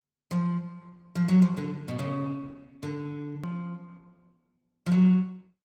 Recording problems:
lossy codec; Opus, log-spectral distance 2 dB, nothing above 18.9 kHz
hard cut with a click; at 3.5 s

